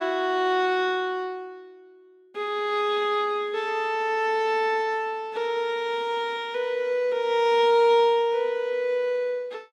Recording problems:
none

